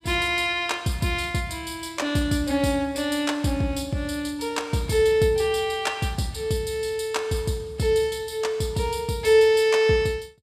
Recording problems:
none

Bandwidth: 14.5 kHz